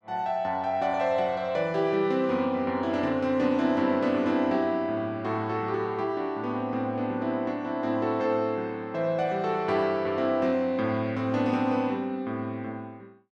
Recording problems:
none

